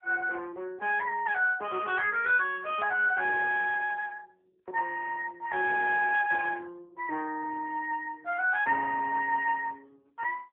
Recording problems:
phone line; 300 Hz to 3.4 kHz, AMR-NB

